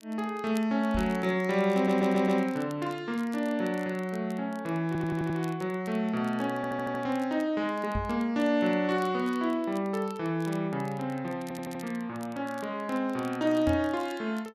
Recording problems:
crackling; vinyl, SNR 24 dB
microphone bump; at 1 s, at 8 s and at 14 s; peak 0 dB vs average level
stutter; 4 times, first at 2 s

